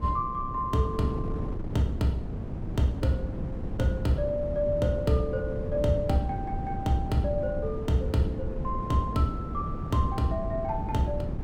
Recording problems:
wind noise; below 220 Hz, SNR 5 dB

